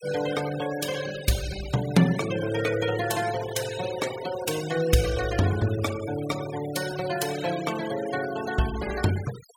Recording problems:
denoising artefacts; signal-to-artefact ratio 11 dB

